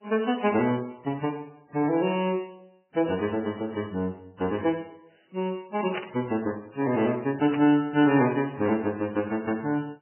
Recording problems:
lossy codec; MP3, then AAC, log-spectral distance 4 dB, nothing above 3 kHz
burst of static; at 6 s and at 7.5 s; peak -5 dB vs average level

